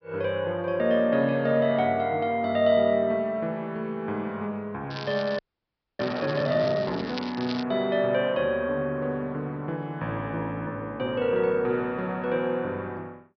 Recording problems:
treble missing; nothing above 5.5 kHz
crackle; from 5 to 7.5 s; loose cable, SNR 14 dB
frozen audio; at 5.5 s for 0.5 s

